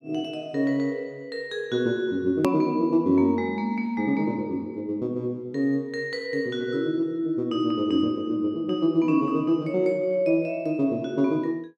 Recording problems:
edit click; at 2.5 s

